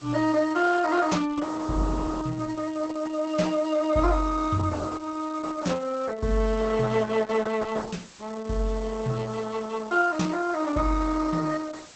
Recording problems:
lossy compression; Opus, log-spectral distance 6 dB, nothing above 7.3 kHz
background hiss; slope -1 dB per octave, SNR 22 dB

